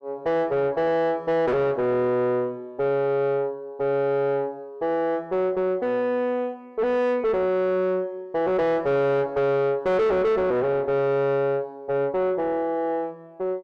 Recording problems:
distorted audio; soft clipping, signal-to-distortion ratio 6 dB

